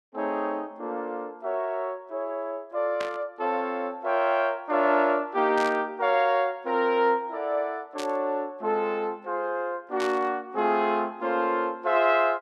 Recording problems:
static burst; 4 times, first at 3 s; peak -5 dB vs average level

